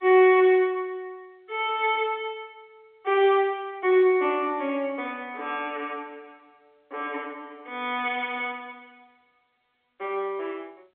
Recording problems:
phone line; 280 Hz to 3.7 kHz, G.711

